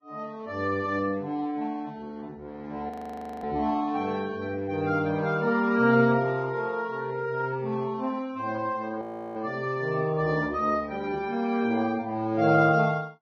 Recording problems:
lossy compression; Vorbis, log-spectral distance 2 dB, nothing above 14.6 kHz
frozen audio; at 3 s for 0.5 s and at 9 s

